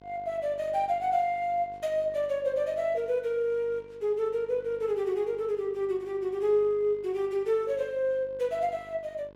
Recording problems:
hum; 50 Hz, harmonics up to 2.1 kHz, SNR 25 dB

